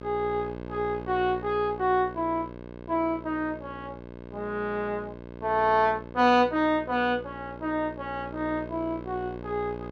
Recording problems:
electrical hum; 60 Hz, harmonics up to 2.1 kHz, SNR 13 dB

